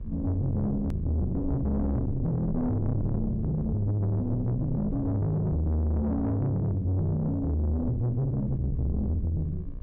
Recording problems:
distortion; soft clipping, signal-to-distortion ratio 7 dB
electrical hum; 60 Hz, harmonics up to 1.7 kHz, SNR 30 dB
low-frequency rumble; below 130 Hz, SNR 10 dB
hard cut with a click; at 1 s

